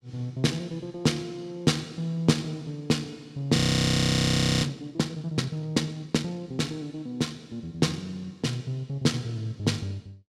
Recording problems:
frozen audio; at 3.5 s for 1 s

